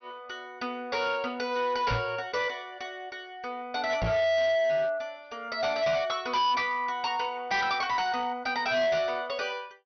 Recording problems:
treble cut off; nothing above 6 kHz
distortion; hard clipping, signal-to-distortion ratio 6 dB
knock on the microphone; at 2 s and at 4 s; peak +1 dB vs average level

